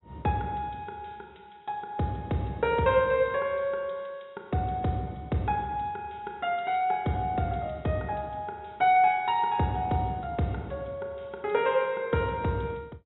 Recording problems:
low-pass filter; nothing above 3.9 kHz

